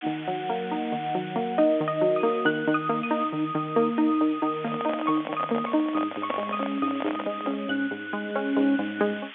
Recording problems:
phone line; 220 Hz to 3.7 kHz, G.711
background hiss; SNR 16 dB
microphone handling noise; from 4.5 to 7.5 s; peak +1 dB vs average level

